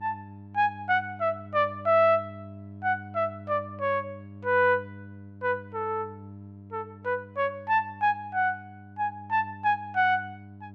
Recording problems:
hum; 50 Hz, harmonics up to 700 Hz, SNR 18 dB

